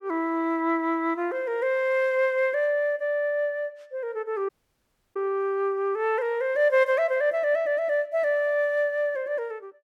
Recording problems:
audio cutting out; at 4.5 s for 0.5 s

